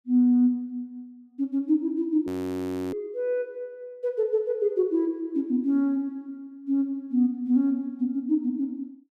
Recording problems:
frozen audio; at 2.5 s for 0.5 s

